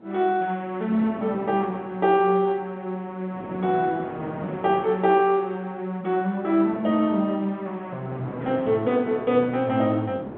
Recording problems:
telephone audio; 130 Hz to 3.6 kHz, G.711
wind on the microphone; below 560 Hz, SNR 15 dB

